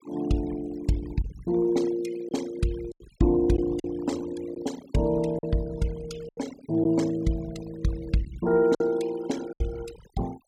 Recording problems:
noise reduction artefacts; signal-to-artefact ratio 19 dB
lost packets; 4% of the sound replaced, filled with silence

